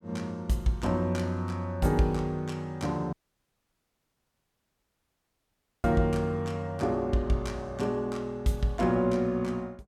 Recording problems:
dropout; at 3 s for 2.5 s

